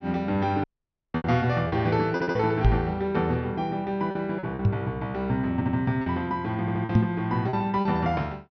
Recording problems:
low-pass filter; nothing above 6.2 kHz
lost packets; 7% of the sound replaced, filled with repeated pitch periods
audio cutting out; at 0.5 s
audio stuttering; at 2 s, at 5.5 s and at 6.5 s
knock on the microphone; at 2.5 s, at 4.5 s and at 7 s; peak +9 dB vs average level

